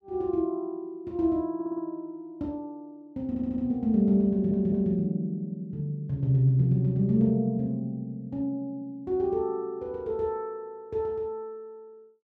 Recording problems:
audio stuttering; at 1.5 s, at 3.5 s and at 4.5 s

